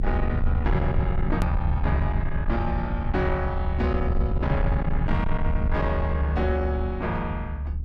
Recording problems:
distorted audio; soft clipping, signal-to-distortion ratio 11 dB
low-frequency rumble; below 78 Hz, SNR -1 dB
click at an edit; at 1.5 s

